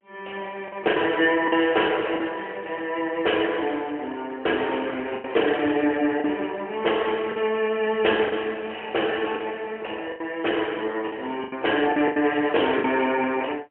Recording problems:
phone line; 260 Hz to 3.2 kHz, AMR-NB, then MP3
lost packets; 6% of the sound replaced, filled with the last packet

